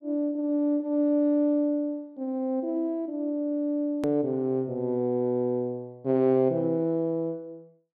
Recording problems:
edit click; at 4 s

